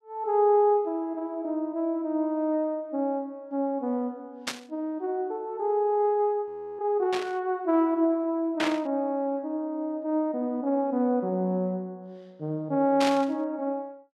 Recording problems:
static burst; 4 times, first at 4.5 s; peak +1 dB vs average level
audio freezing; at 6.5 s

